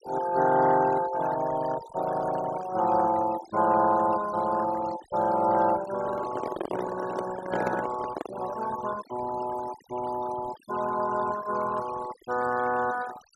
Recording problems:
denoising artefacts; signal-to-artefact ratio 14 dB
handling noise; from 6 to 8.5 s; peak 0 dB vs average level

